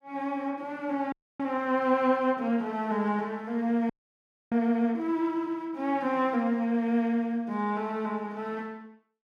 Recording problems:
audio freezing; at 1 s and at 4 s for 0.5 s

